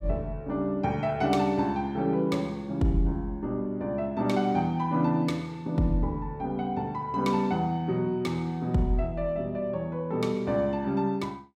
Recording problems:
none

